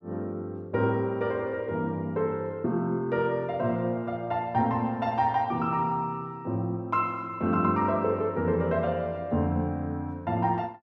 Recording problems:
none

